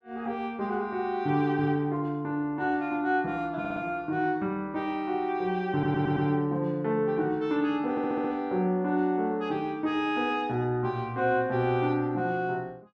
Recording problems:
stutter; at 3.5 s, at 5.5 s and at 8 s

